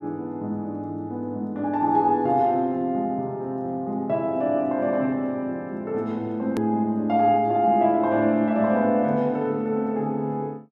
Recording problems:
hard cut with a click; at 6.5 s

